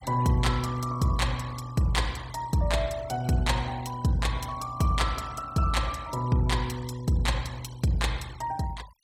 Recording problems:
denoising artefacts; signal-to-artefact ratio 20 dB

